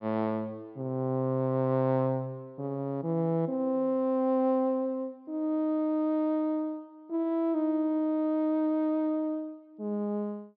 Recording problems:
treble missing; nothing above 5.5 kHz

